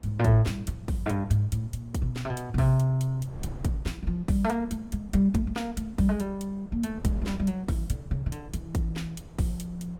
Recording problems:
wind on the microphone; below 190 Hz, SNR 19 dB

